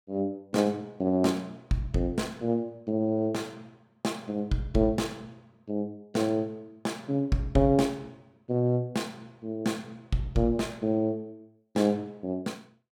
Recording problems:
none

